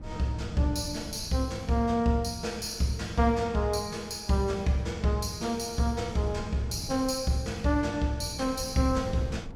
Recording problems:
wind on the microphone; below 180 Hz, SNR 17 dB

